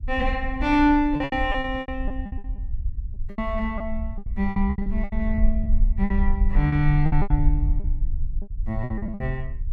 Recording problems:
low-frequency rumble; below 52 Hz, strongest tone 20 Hz, SNR 3 dB
packet loss; 16% of the sound replaced, filled with repeated pitch periods

